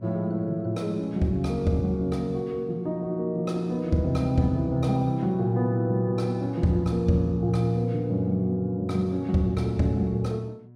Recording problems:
electrical hum; 60 Hz, harmonics up to 720 Hz, SNR 23 dB

